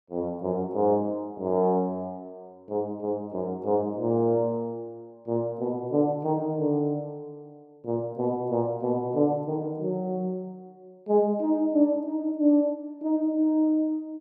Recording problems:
none

